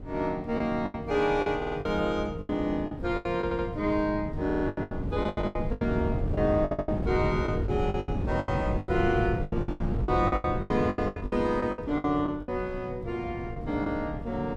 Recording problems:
wind on the microphone; below 210 Hz, SNR 5 dB
lost packets; 16% of the sound replaced, filled with the last packet
stutter; 4 times, first at 1.5 s

